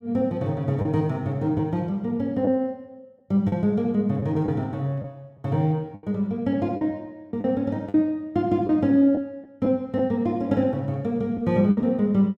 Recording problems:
lost packets; 5% of the sound replaced, filled with the last packet

